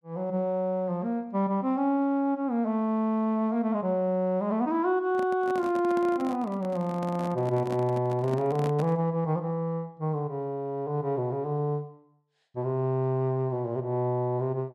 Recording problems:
microphone handling noise; from 5 to 9 s; peak -5 dB vs average level

